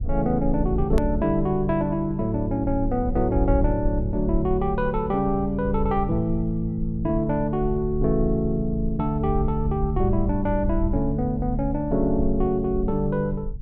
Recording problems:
low-frequency rumble; below 64 Hz, SNR 7 dB
click at an edit; at 1 s

